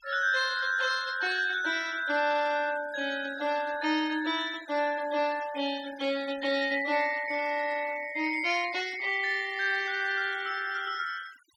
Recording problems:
denoising artefacts; signal-to-artefact ratio 18 dB

